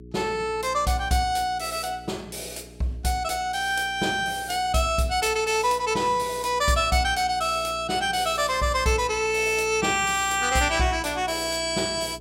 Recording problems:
hum; 60 Hz, harmonics up to 420 Hz, SNR 21 dB

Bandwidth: 16 kHz